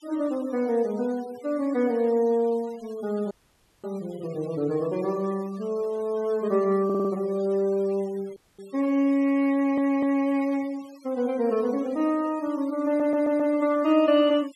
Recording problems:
noise reduction artefacts; signal-to-artefact ratio 25 dB
dropout; at 3.5 s for 0.5 s and at 8.5 s
stutter; at 7 s, at 9.5 s and at 13 s

